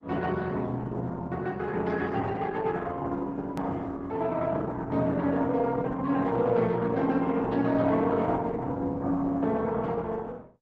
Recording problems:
lossy compression; Opus, log-spectral distance 3 dB, nothing above 13.1 kHz
hard cut with a click; at 3.5 s

